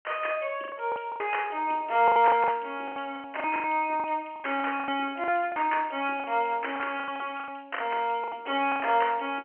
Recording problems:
telephone audio; 280 Hz to 3.2 kHz, G.711
lost packets; 15% of the sound replaced, filled with the last packet

